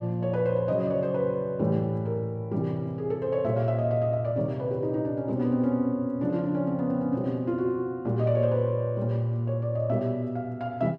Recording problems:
none

